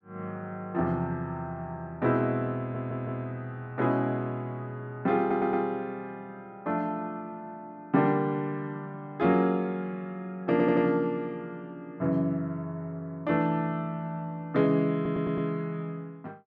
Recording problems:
audio stuttering; 4 times, first at 2.5 s

